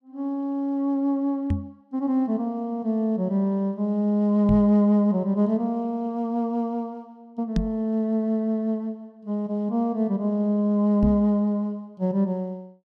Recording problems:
microphone bump; 4 times, first at 1.5 s; peak +3 dB vs average level

